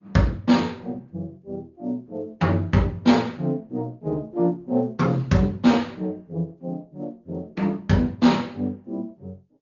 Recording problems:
low-pass filter; nothing above 6.9 kHz
lossy compression; Opus, log-spectral distance 2 dB

